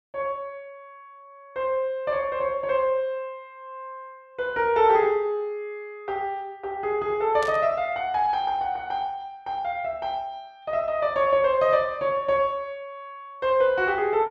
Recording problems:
burst of static; at 7.5 s; peak -9 dB vs average level

